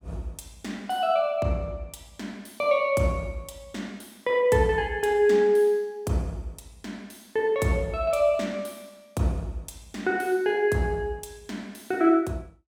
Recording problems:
none

